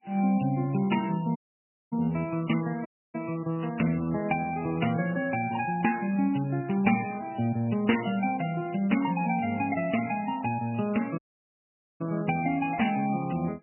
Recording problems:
lossy codec; MP3, log-spectral distance 5 dB, nothing above 2.5 kHz
audio cutting out; at 1.5 s for 0.5 s, at 3 s and at 11 s for 1 s

